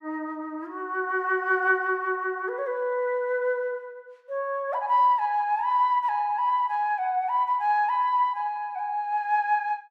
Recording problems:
none

